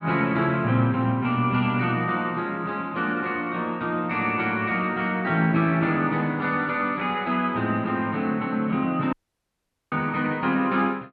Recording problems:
audio cutting out; at 9 s for 1 s

